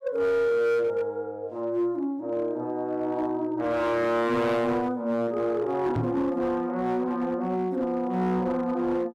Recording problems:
distorted audio; hard clipping, signal-to-distortion ratio 11 dB
microphone thump; at 6 s; peak +3 dB vs average level

